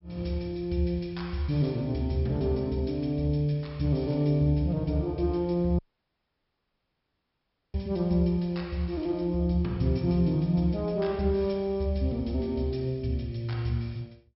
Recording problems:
low-pass filter; nothing above 5.4 kHz
audio cutting out; at 6 s for 2 s

